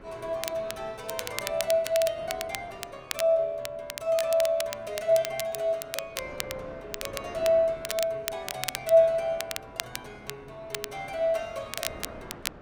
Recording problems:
wind noise; below 900 Hz, SNR 20 dB
crackling; vinyl, SNR 9 dB

